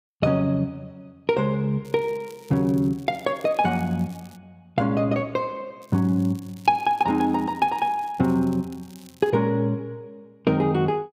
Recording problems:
crackle; from 2 to 4.5 s and from 6 to 9.5 s; loose cable, SNR 28 dB

